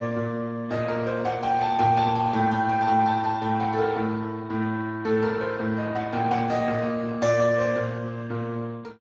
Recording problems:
codec artefacts; Speex, log-spectral distance 4 dB

